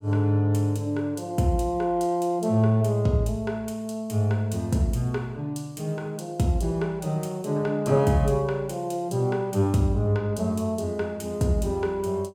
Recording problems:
none

